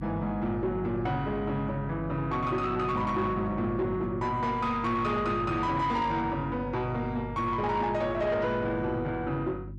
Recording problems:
distortion; soft clipping, signal-to-distortion ratio 11 dB
hum; 50 Hz, harmonics up to 350 Hz, SNR 11 dB

